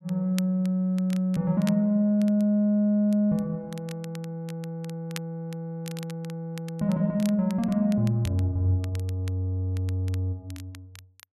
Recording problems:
crackle; vinyl, SNR 21 dB

